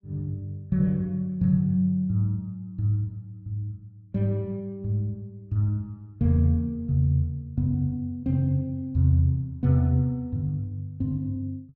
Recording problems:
none

